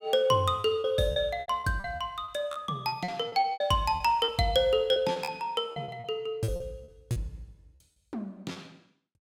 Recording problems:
packet loss; 15% of the sound replaced, filled with repeated pitch periods

